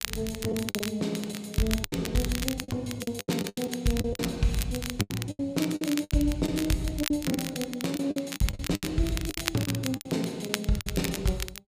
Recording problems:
crackle; vinyl, SNR 7 dB
lost packets; 13% of the sound replaced, filled with the last packet

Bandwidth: 15 kHz